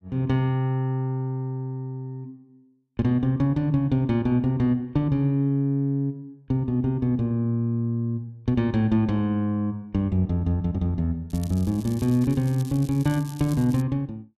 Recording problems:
crackle; from 11 to 14 s; loose cable, SNR 21 dB

